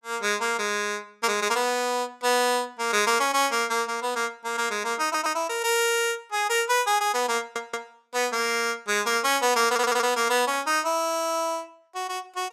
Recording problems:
stutter; at 5 s, at 7.5 s and at 9.5 s

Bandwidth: 14.5 kHz